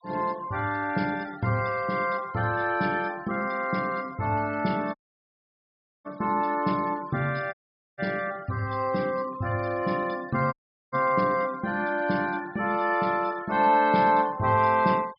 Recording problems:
treble missing; nothing above 5.5 kHz
denoising artefacts; signal-to-artefact ratio 23 dB
dropout; at 5 s for 1 s, at 7.5 s and at 11 s

